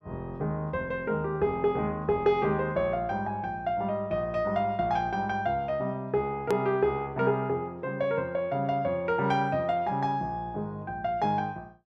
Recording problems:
edit click; at 6.5 s

